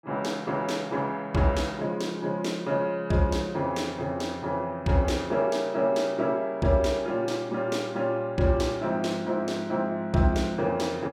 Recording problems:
none

